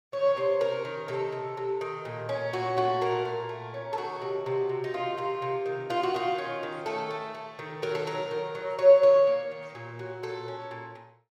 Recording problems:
none

